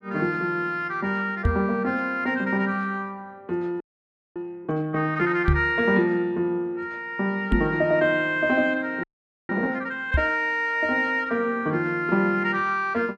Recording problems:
microphone thump; 4 times, first at 1.5 s; peak +6 dB vs average level
frozen audio; at 4 s for 0.5 s and at 9 s

